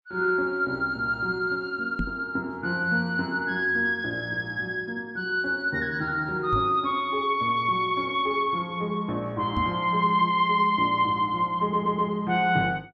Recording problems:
microphone bump; at 2 s, at 6.5 s and at 9.5 s; peak 0 dB vs average level
audio stuttering; at 12 s

